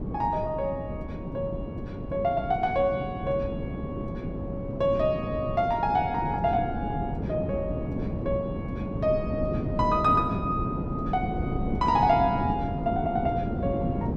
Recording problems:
wind on the microphone; below 320 Hz, SNR 4 dB

